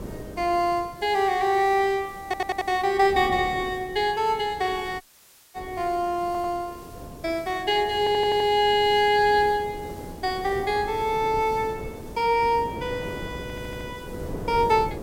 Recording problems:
hiss; slope 0 dB per octave, SNR 27 dB
wind noise; below 470 Hz, SNR 16 dB
audio stuttering; 4 times, first at 2 s
audio cutting out; at 5 s for 0.5 s

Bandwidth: 16 kHz